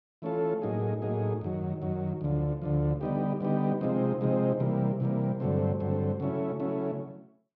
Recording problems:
none

